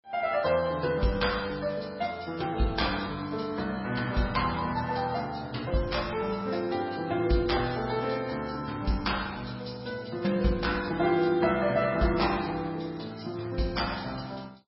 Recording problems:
lossy codec; MP3, log-spectral distance 5 dB, nothing above 5.5 kHz

